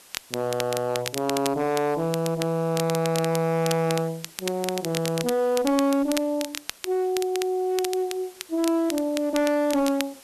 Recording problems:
distorted audio; hard clipping, uneven, signal-to-distortion ratio 9 dB
background hiss; slope -1 dB per octave, SNR 23 dB
crackling; vinyl, SNR 10 dB

